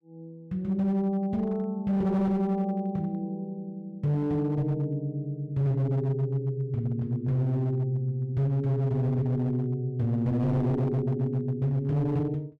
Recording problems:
distortion; hard clipping, signal-to-distortion ratio 11 dB

